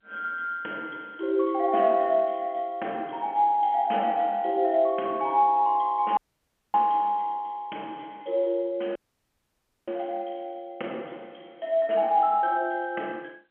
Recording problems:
phone line; 240 Hz to 3.2 kHz, G.711
audio cutting out; at 6 s for 0.5 s and at 9 s for 1 s

